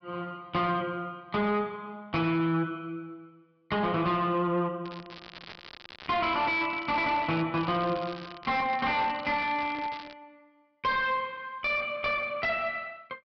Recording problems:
treble cut off; nothing above 5.5 kHz
distortion; soft clipping, signal-to-distortion ratio 6 dB
crackling; from 5 to 7.5 s and from 7.5 to 10 s; loose cable, SNR 16 dB

